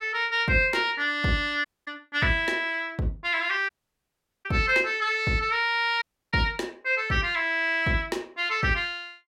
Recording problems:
dropout; at 1.5 s, at 3.5 s for 1 s and at 6 s

